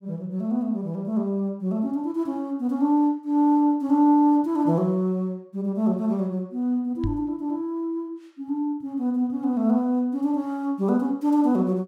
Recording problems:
microphone thump; at 7 s; peak -1 dB vs average level

